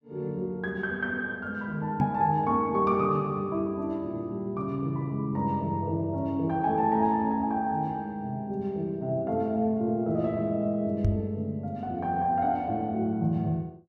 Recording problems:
microphone thump; at 2 s and at 11 s; peak +6 dB vs average level

